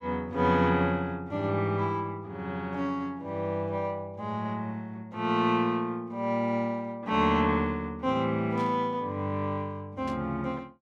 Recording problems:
static burst; at 8.5 s and at 10 s; peak -13 dB vs average level

